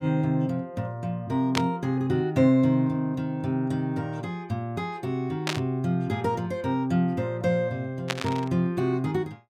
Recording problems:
static burst; at 1.5 s, at 5.5 s and at 8 s; peak +4 dB vs average level

